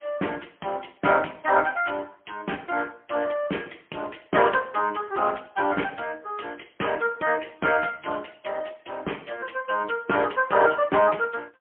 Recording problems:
telephone audio; 260 Hz to 3.1 kHz, AMR-NB, then MP3

